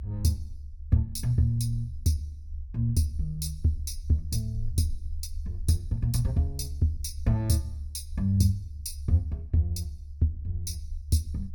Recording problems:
rumble; below 74 Hz, SNR 11 dB

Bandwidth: 18 kHz